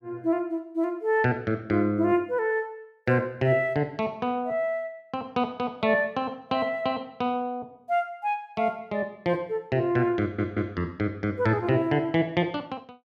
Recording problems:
audio stuttering; at 10 s

